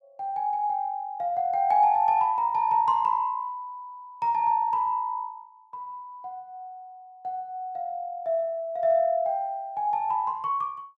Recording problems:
none

